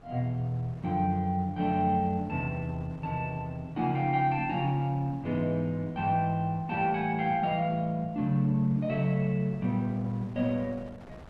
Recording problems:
wind on the microphone; below 680 Hz, SNR 22 dB

